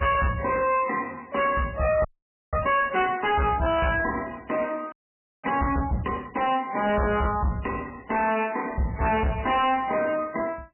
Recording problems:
codec artefacts; MP3, log-spectral distance 6 dB, nothing above 2.7 kHz
distortion; soft clipping, signal-to-distortion ratio 7 dB
audio freezing; at 2 s and at 5 s for 0.5 s

